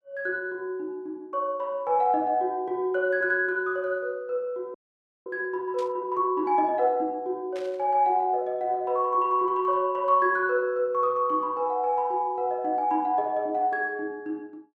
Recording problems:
audio freezing; at 4.5 s for 0.5 s
static burst; at 6 s and at 7.5 s; peak -15 dB vs average level

